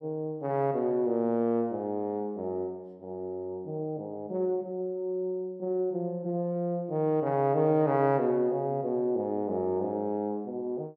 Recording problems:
none

